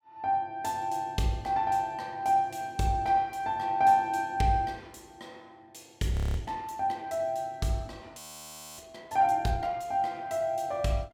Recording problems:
audio freezing; at 6 s and at 8 s for 0.5 s

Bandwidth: 16.5 kHz